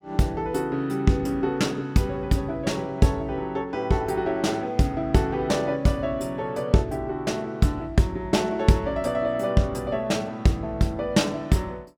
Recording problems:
none

